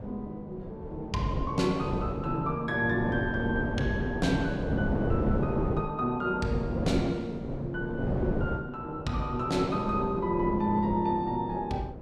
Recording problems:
wind on the microphone; below 440 Hz, SNR 4 dB

